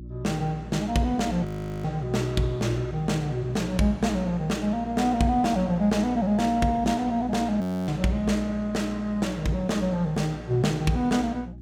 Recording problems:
hum; 60 Hz, harmonics up to 360 Hz, SNR 15 dB
audio freezing; at 1.5 s and at 7.5 s

